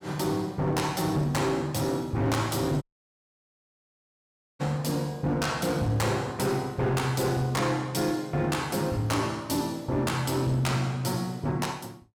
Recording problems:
distortion; hard clipping, uneven, signal-to-distortion ratio 12 dB
audio cutting out; at 3 s for 2 s

